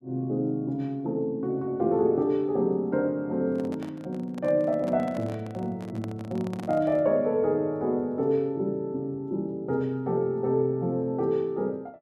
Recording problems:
handling noise; from 3.5 to 7 s; peak -9 dB vs average level

